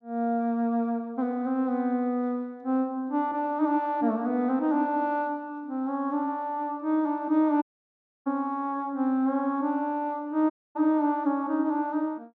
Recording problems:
dropout; at 7.5 s for 0.5 s and at 11 s

